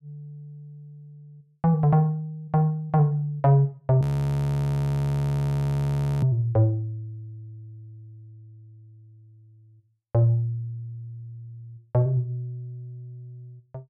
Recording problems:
audio freezing; at 4 s for 2 s

